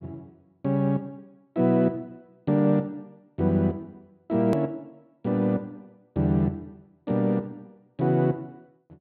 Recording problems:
treble missing; nothing above 4.5 kHz
hard cut with a click; at 4.5 s

